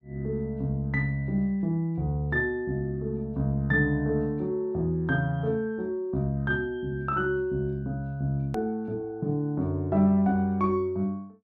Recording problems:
hard cut with a click; at 8.5 s

